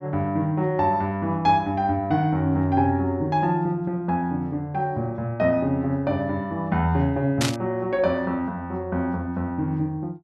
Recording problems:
burst of static; at 7.5 s; peak +2 dB vs average level

